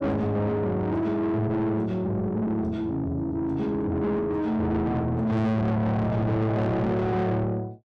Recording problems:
distortion; soft clipping, signal-to-distortion ratio 6 dB

